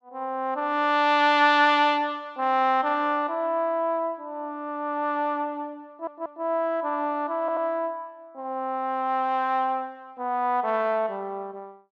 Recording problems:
stutter; at 6 s and at 7.5 s

